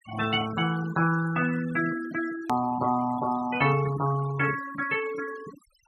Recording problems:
noise reduction artefacts; signal-to-artefact ratio 15 dB
click at an edit; at 2.5 s

